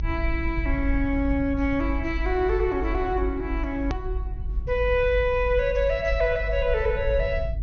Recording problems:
treble missing; nothing above 6.4 kHz
rumble; below 56 Hz, strongest tone 50 Hz, SNR 6 dB
click at an edit; at 4 s

